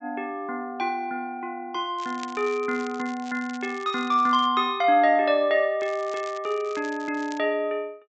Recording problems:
low-pass filter; nothing above 8 kHz
crackle; from 2 to 4.5 s and from 6 to 7.5 s; loose cable, SNR 21 dB

